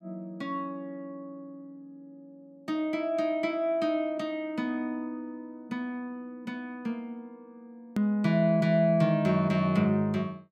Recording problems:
click at an edit; at 8 s

